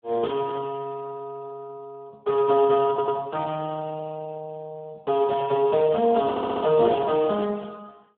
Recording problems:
phone line; 220 Hz to 2.8 kHz, Speex
audio stuttering; at 3 s and at 6.5 s

